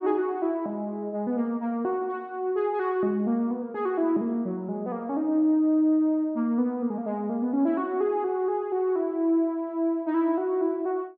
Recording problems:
none

